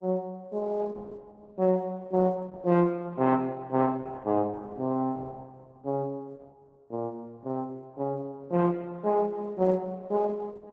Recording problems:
lossy codec; Opus, log-spectral distance 2 dB

